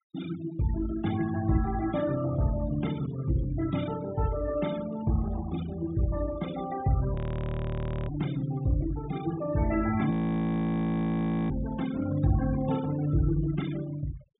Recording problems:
treble missing; nothing above 4 kHz
noise reduction artefacts; signal-to-artefact ratio 14 dB
audio freezing; at 7 s for 1 s and at 10 s for 1.5 s

